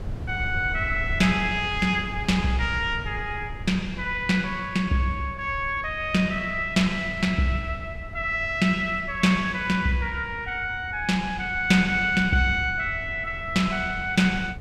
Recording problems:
wind on the microphone; below 120 Hz, SNR 14 dB

